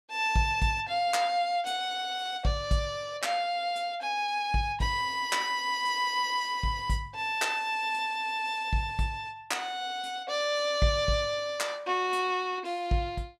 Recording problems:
none

